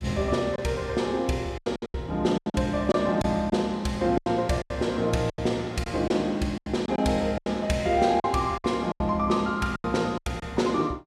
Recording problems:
packet loss; 11% of the sound replaced, filled with silence

